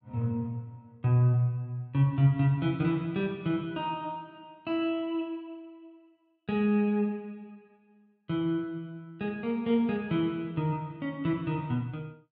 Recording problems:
none

